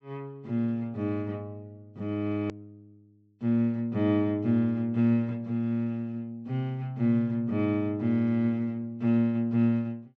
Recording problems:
treble cut off; nothing above 8 kHz
click at an edit; at 2.5 s

